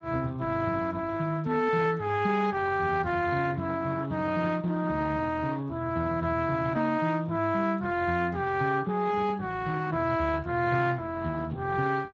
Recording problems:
codec artefacts; Speex, log-spectral distance 4 dB

